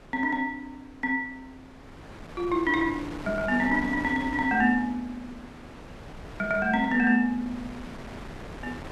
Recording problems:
wind noise; below 1.1 kHz, SNR 16 dB

